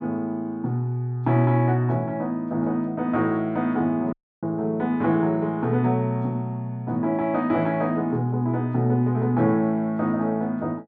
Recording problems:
audio cutting out; at 4 s

